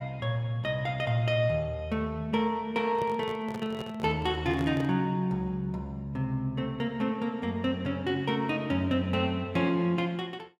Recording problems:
microphone handling noise; from 3 to 5 s; peak -5 dB vs average level

